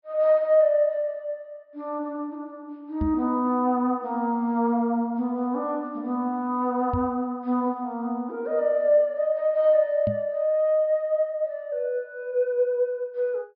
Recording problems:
treble cut off; nothing above 5.5 kHz
microphone bump; at 3 s, at 7 s and at 10 s; peak -1 dB vs average level

